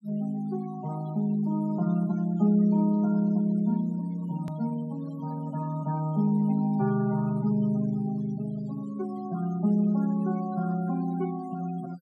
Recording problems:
denoising artefacts; signal-to-artefact ratio 19 dB
click at an edit; at 4.5 s

